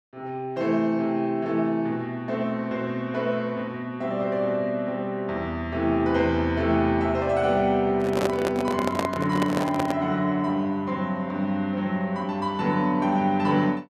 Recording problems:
microphone handling noise; from 8 to 10 s; peak +3 dB vs average level

